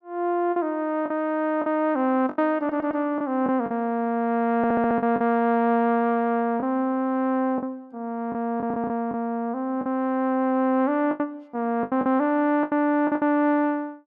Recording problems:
packet loss; 7% of the sound replaced, filled with the last packet
audio stuttering; at 2.5 s, at 4.5 s and at 8.5 s

